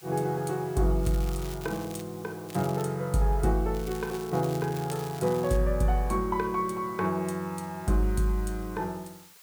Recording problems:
background hiss; SNR 22 dB
crackling; at 1 s, at 2.5 s and from 3.5 to 5.5 s; loose cable, SNR 17 dB

